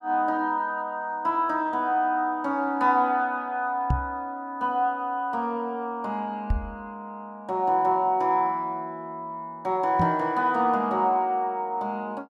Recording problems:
microphone bump; at 4 s, at 6.5 s and at 10 s; peak +4 dB vs average level

